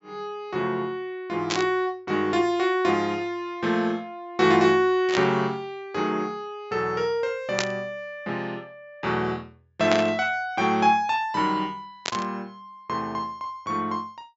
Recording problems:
treble missing; nothing above 8 kHz
static burst; 5 times, first at 1.5 s; peak +4 dB vs average level

